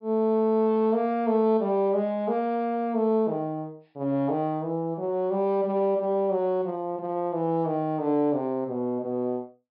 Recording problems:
treble cut off; nothing above 5.5 kHz

